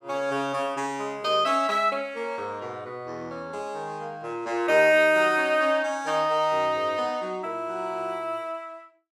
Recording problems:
none

